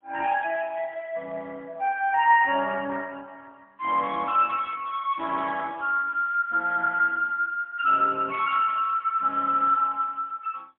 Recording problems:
telephone audio; 240 Hz to 3.9 kHz, AMR-NB, then MP3

